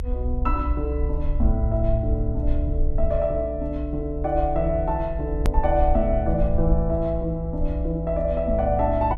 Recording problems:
low-frequency rumble; below 62 Hz, SNR 2 dB
hard cut with a click; at 5.5 s

